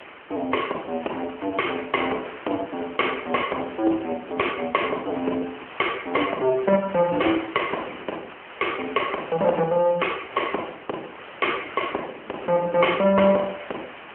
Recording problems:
telephone audio; 280 Hz to 3.2 kHz, AMR-NB
background hiss; SNR 16 dB
wind on the microphone; below 490 Hz, SNR 22 dB

